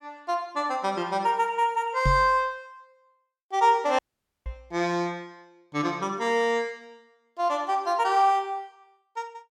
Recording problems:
microphone bump; at 2 s and at 4.5 s; peak +3 dB vs average level
audio cutting out; at 4 s

